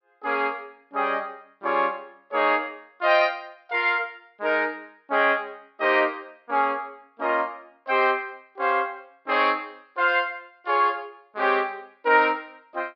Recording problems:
treble cut off; nothing above 5.5 kHz

